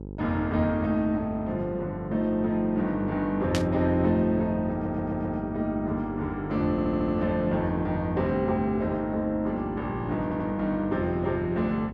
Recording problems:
mains hum; 50 Hz, harmonics up to 900 Hz, SNR 12 dB
static burst; at 3.5 s; peak +1 dB vs average level
stutter; at 4.5 s, at 6.5 s and at 10 s

